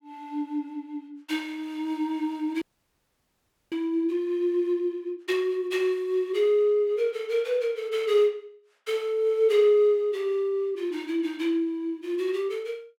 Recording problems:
audio freezing; at 2.5 s for 1 s

